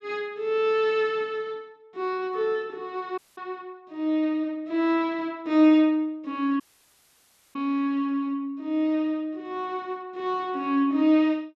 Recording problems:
dropout; at 3 s and at 6.5 s for 1 s

